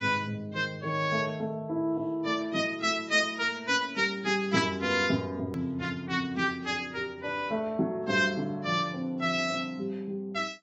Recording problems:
codec artefacts; AAC, log-spectral distance 2 dB, nothing above 7.3 kHz
hard cut with a click; at 5.5 s

